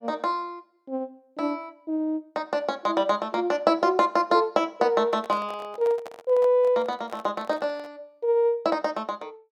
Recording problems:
handling noise; from 5 to 8 s; peak -9 dB vs average level

